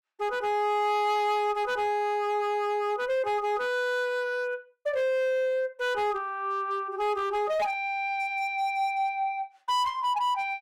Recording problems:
distorted audio; hard clipping, signal-to-distortion ratio 10 dB

